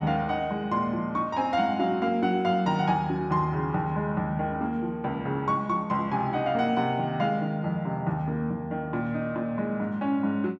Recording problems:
none

